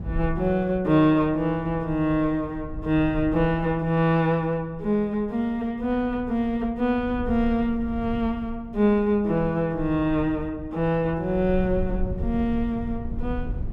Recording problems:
rumble; below 84 Hz, SNR 13 dB

